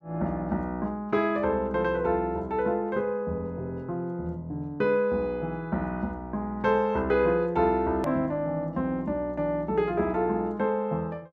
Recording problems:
click at an edit; at 8 s

